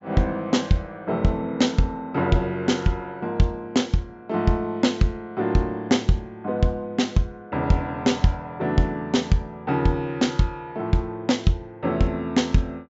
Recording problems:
treble missing; nothing above 8 kHz

